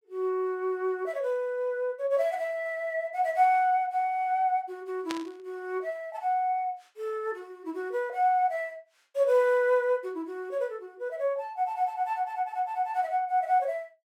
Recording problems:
burst of static; at 5 s; peak -3 dB vs average level

